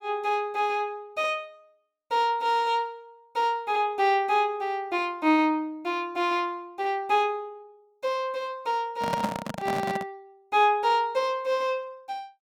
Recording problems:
handling noise; from 9 to 10 s; peak +2 dB vs average level

